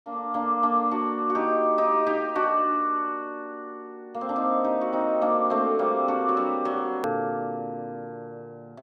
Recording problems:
click at an edit; at 7 s

